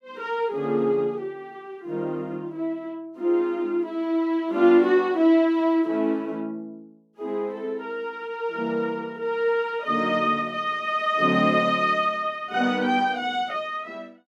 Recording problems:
none

